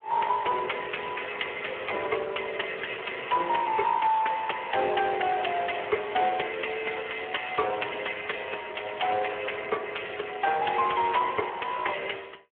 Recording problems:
phone line; 320 Hz to 3.3 kHz, Speex

